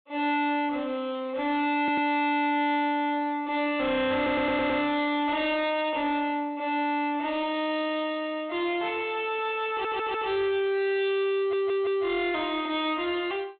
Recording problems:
treble cut off; nothing above 4 kHz
distortion; soft clipping, signal-to-distortion ratio 11 dB
stutter; 4 times, first at 2 s

